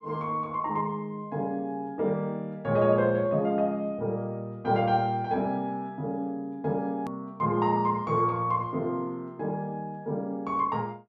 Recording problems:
hard cut with a click; at 7 s

